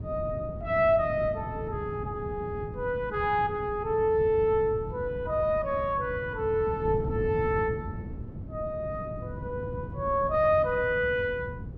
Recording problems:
wind noise; below 200 Hz, SNR 10 dB

